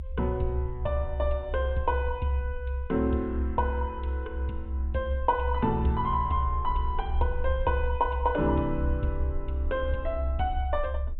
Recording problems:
treble missing; nothing above 4 kHz
rumble; below 68 Hz, strongest tone 66 Hz, SNR 3 dB

